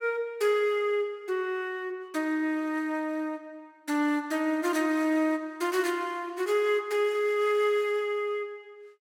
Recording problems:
none

